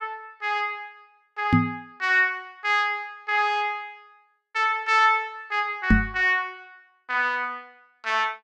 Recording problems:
microphone bump; at 1.5 s and at 6 s; peak +8 dB vs average level

